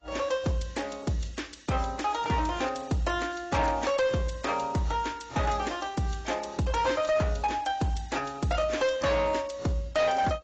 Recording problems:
codec artefacts; AAC, log-spectral distance 5 dB, nothing above 7.6 kHz
distortion; hard clipping, signal-to-distortion ratio 10 dB

